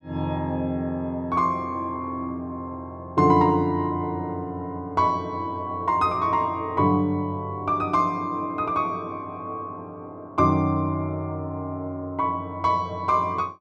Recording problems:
none

